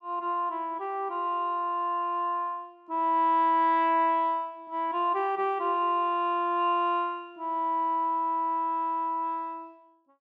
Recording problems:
none

